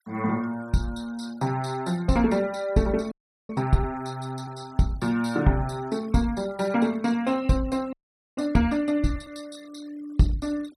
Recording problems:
denoising artefacts; signal-to-artefact ratio 23 dB
frozen audio; at 3 s and at 8 s

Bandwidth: 14.5 kHz